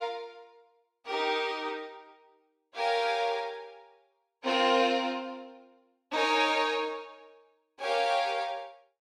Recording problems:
none

